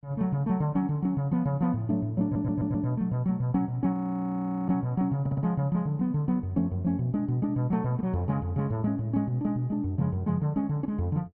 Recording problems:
stutter; at 2 s and at 5 s
audio freezing; at 4 s for 0.5 s

